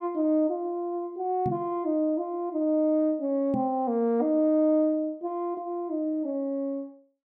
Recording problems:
microphone thump; at 1.5 s and at 3.5 s; peak 0 dB vs average level

